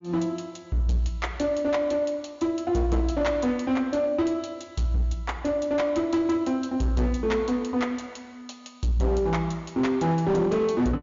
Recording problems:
treble cut off; nothing above 7.2 kHz
distortion; hard clipping, uneven, signal-to-distortion ratio 11 dB

